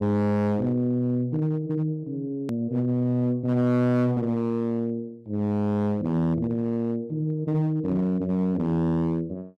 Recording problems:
distortion; hard clipping, uneven, signal-to-distortion ratio 10 dB
hard cut with a click; at 2.5 s

